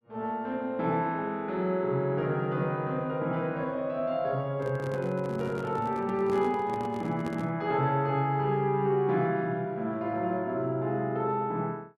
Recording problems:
microphone handling noise; from 4.5 to 7.5 s; peak -5 dB vs average level

